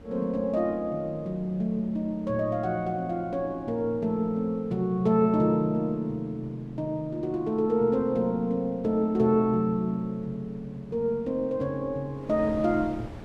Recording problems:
wind noise; below 460 Hz, SNR 21 dB

